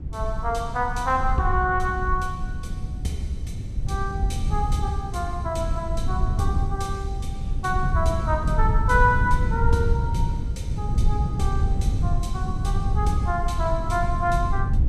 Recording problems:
wind noise; below 100 Hz, SNR 0 dB

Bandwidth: 14.5 kHz